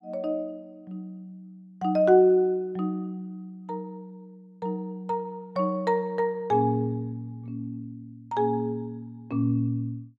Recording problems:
none

